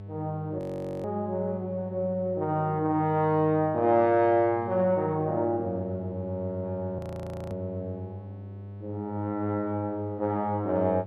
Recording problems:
hum; 50 Hz, harmonics up to 900 Hz, SNR 13 dB
frozen audio; at 0.5 s and at 7 s for 0.5 s

